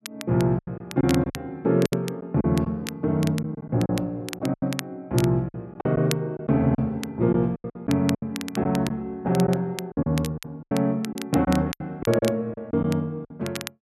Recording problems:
crackling; vinyl, SNR 14 dB
lost packets; 10% of the sound replaced, filled with silence

